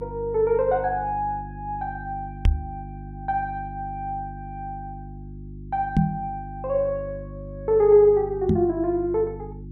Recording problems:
electrical hum; 50 Hz, harmonics up to 350 Hz, SNR 14 dB
microphone thump; at 2.5 s, at 6 s and at 8.5 s; peak +7 dB vs average level

